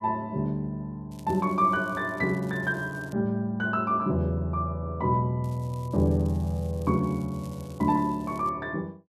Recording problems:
crackle; from 1 to 3 s and from 5.5 to 8.5 s; loose cable, SNR 27 dB

